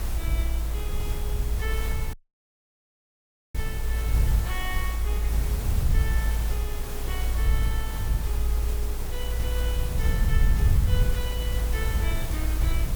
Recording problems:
hiss; slope -4 dB per octave, SNR 0 dB
rumble; below 66 Hz, SNR -10 dB
dropout; at 2 s for 1.5 s

